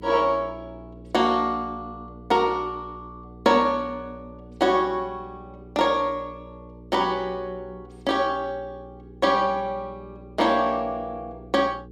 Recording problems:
electrical hum; 60 Hz, harmonics up to 480 Hz, SNR 20 dB

